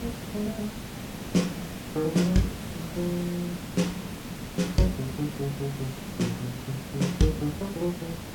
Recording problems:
background hiss; slope -4 dB per octave, SNR 7 dB

